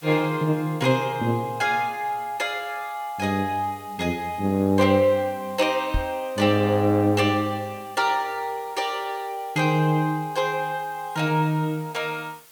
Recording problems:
background hiss; slope 0 dB per octave, SNR 24 dB
microphone bump; at 6 s; peak +1 dB vs average level

